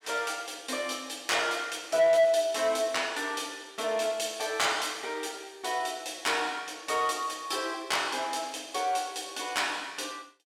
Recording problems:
distorted audio; soft clipping, signal-to-distortion ratio 12 dB

